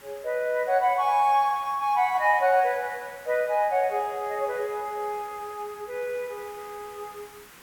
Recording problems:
hiss; SNR 22 dB

